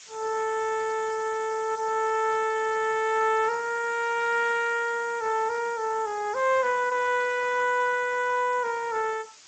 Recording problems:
codec artefacts; Speex, log-spectral distance 11 dB
background hiss; slope +3 dB per octave, SNR 20 dB

